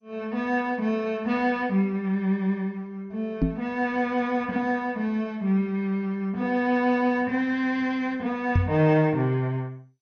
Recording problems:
lossy codec; MP2, log-spectral distance 2 dB, nothing above 6.2 kHz
microphone thump; at 3.5 s and at 8.5 s; peak +6 dB vs average level

